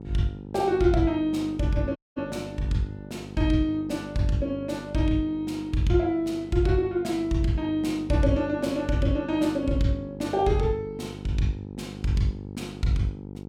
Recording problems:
hum; 50 Hz, harmonics up to 950 Hz, SNR 13 dB
audio cutting out; at 2 s

